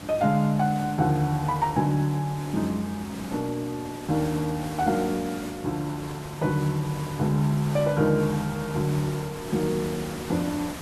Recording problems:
hiss; slope -4 dB per octave, SNR 13 dB

